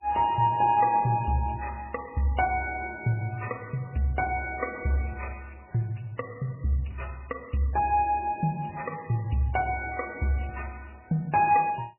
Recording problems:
lossy compression; MP3, log-spectral distance 4 dB, nothing above 2.5 kHz

